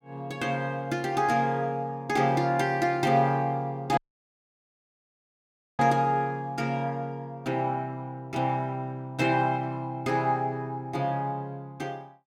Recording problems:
audio cutting out; at 4 s for 2 s

